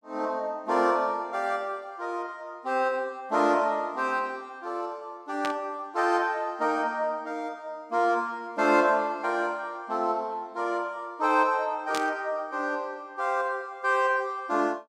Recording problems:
static burst; at 5.5 s and at 12 s; peak -2 dB vs average level

